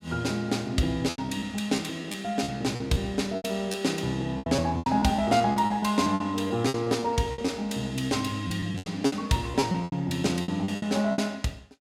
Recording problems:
packet loss; 14% of the sound replaced, filled with repeated pitch periods

